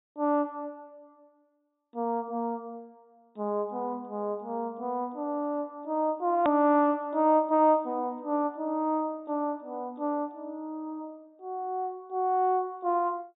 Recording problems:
treble cut off; nothing above 4 kHz
hard cut with a click; at 6.5 s

